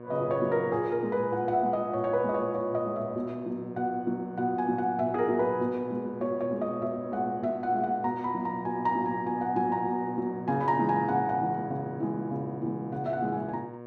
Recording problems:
hum; 60 Hz, harmonics up to 1.8 kHz, SNR 14 dB

